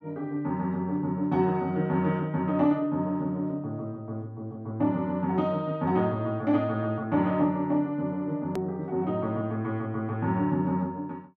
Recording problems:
click at an edit; at 8.5 s

